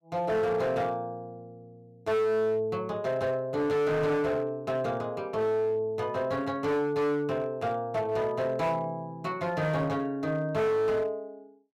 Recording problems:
distorted audio; hard clipping, signal-to-distortion ratio 10 dB

